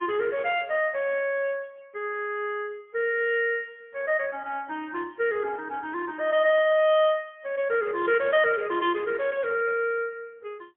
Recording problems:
telephone audio; 300 Hz to 3.5 kHz, AMR-NB, then MP3

